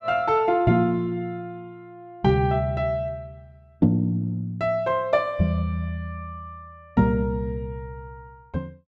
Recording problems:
none

